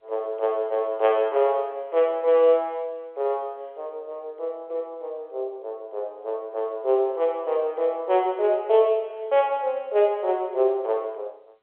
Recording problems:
telephone audio; 340 Hz to 3.5 kHz, G.711

